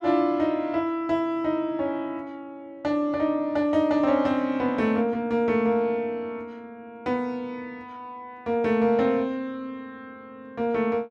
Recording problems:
none

